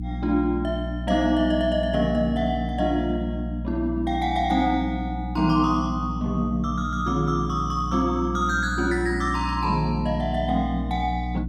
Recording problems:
electrical hum; 60 Hz, harmonics up to 300 Hz, SNR 6 dB

